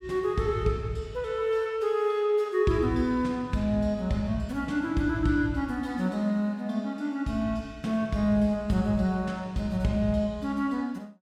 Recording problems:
none

